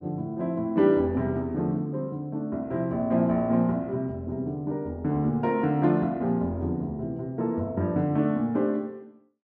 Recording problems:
none

